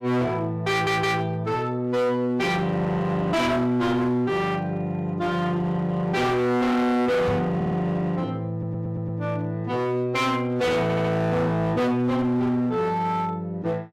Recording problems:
distortion; hard clipping, signal-to-distortion ratio 7 dB
audio stuttering; 4 times, first at 0.5 s
knock on the microphone; at 7.5 s; peak +1 dB vs average level

